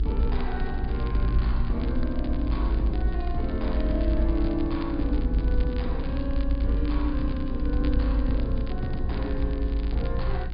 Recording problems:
low-pass filter; nothing above 5 kHz
hum; 60 Hz, harmonics up to 360 Hz, SNR 5 dB
low-frequency rumble; below 52 Hz, strongest tone 50 Hz, SNR -1 dB
crackle; vinyl, SNR 18 dB

